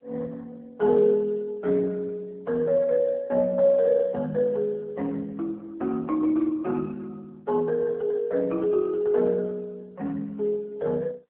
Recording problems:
telephone audio; 260 Hz to 2.2 kHz, AMR-NB

